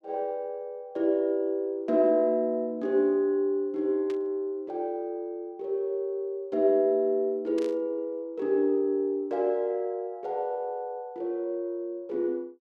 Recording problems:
static burst; at 4 s and at 7.5 s; peak -13 dB vs average level

